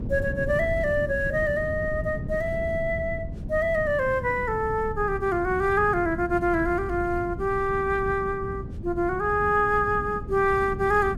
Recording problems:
wind on the microphone; below 180 Hz, SNR 10 dB

